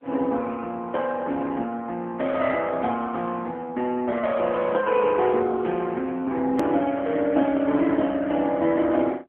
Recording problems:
phone line; 190 Hz to 3.3 kHz, AMR-NB
hard cut with a click; at 6.5 s

